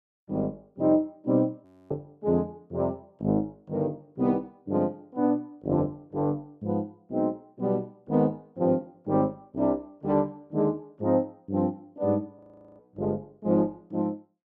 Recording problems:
frozen audio; at 1.5 s and at 12 s

